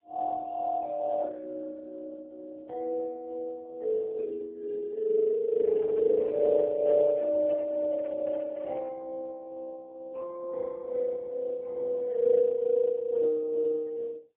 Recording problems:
telephone audio; 340 Hz to 3.5 kHz, AMR-NB, then MP3
handling noise; from 5.5 to 9 s; peak -14 dB vs average level

